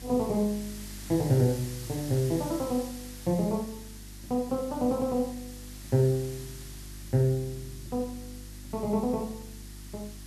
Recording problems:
electrical hum; 50 Hz, harmonics up to 350 Hz, SNR 17 dB
background hiss; slope +1 dB per octave, SNR 16 dB

